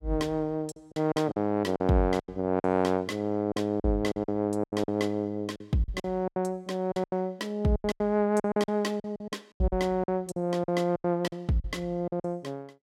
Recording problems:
lost packets; 14% of the sound replaced, filled with silence

